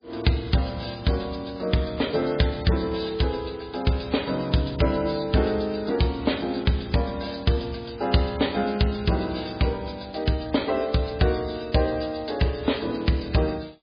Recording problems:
lossy codec; MP3, log-spectral distance 7 dB, nothing above 4.6 kHz

